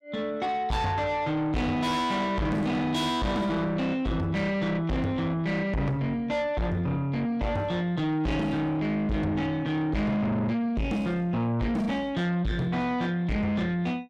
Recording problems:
distortion; soft clipping, signal-to-distortion ratio 7 dB

